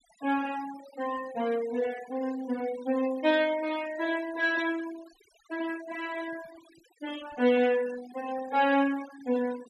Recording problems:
denoising artefacts; signal-to-artefact ratio 18 dB

